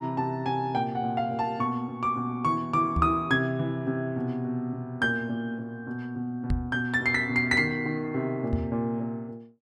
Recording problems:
knock on the microphone; at 3 s, at 6.5 s and at 8.5 s; peak +3 dB vs average level

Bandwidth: 12.5 kHz